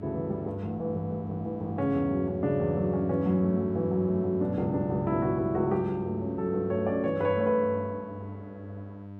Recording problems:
electrical hum; 50 Hz, harmonics up to 1 kHz, SNR 12 dB

